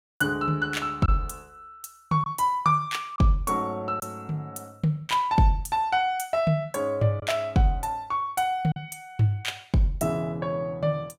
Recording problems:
packet loss; 1.4% of the sound replaced, filled with silence

